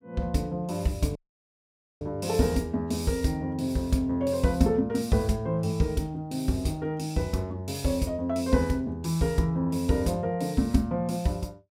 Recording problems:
audio cutting out; at 1 s for 1 s

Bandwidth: 16 kHz